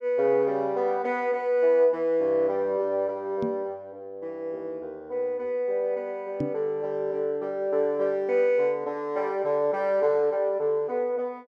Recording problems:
microphone bump; at 3.5 s and at 6.5 s; peak 0 dB vs average level

